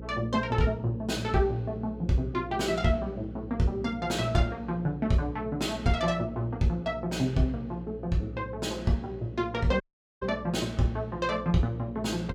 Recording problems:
hum; 60 Hz, harmonics up to 540 Hz, SNR 13 dB
dropout; at 10 s

